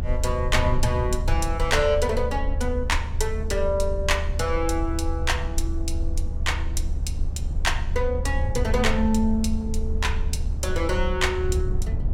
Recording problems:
low-frequency rumble; below 72 Hz, strongest tone 22 Hz, SNR 3 dB
wind noise; below 110 Hz, SNR 9 dB

